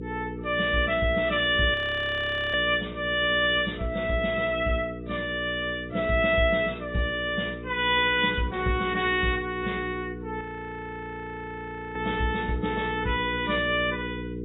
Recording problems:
codec artefacts; AAC, log-spectral distance 3 dB, nothing above 3.6 kHz
hum; 60 Hz, harmonics up to 480 Hz, SNR 12 dB
audio freezing; at 1.5 s for 1 s and at 10 s for 1.5 s

